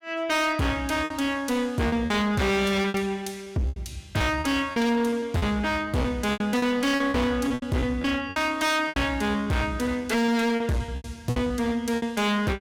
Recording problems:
distortion; hard clipping, uneven, signal-to-distortion ratio 6 dB
packet loss; 12% of the sound replaced, filled with repeated pitch periods

